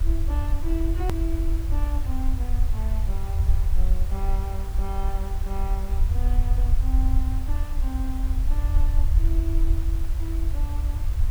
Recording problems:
background hiss; slope -4 dB per octave, SNR 8 dB
rumble; below 62 Hz, SNR -11 dB
click at an edit; at 1 s

